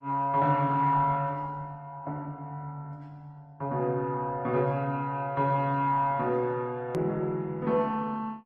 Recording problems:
lossy compression; Opus, log-spectral distance 2 dB, nothing above 13.1 kHz
click at an edit; at 7 s

